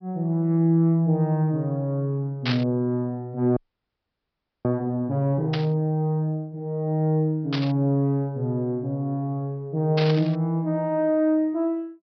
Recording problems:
treble missing; nothing above 5.5 kHz
static burst; 4 times, first at 2.5 s; peak 0 dB vs average level
frozen audio; at 3.5 s for 1 s

